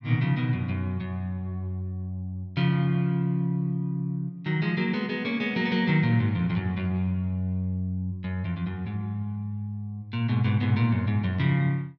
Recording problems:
none

